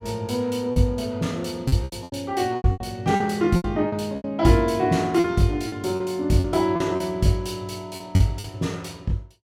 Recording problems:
lost packets; 11% of the sound replaced, filled with repeated pitch periods

